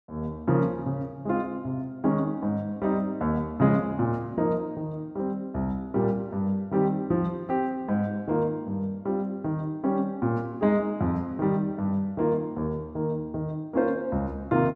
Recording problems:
none

